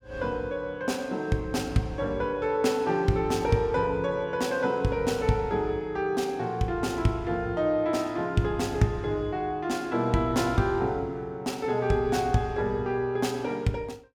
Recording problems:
none

